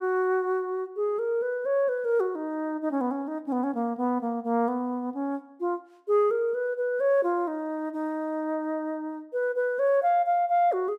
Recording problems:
none

